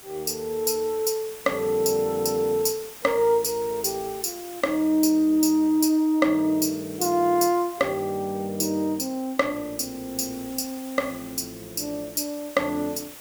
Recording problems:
hiss; slope -1 dB per octave, SNR 17 dB

